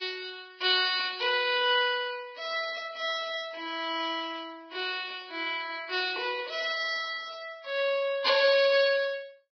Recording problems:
lossy codec; Vorbis, log-spectral distance 5 dB, nothing above 4.8 kHz

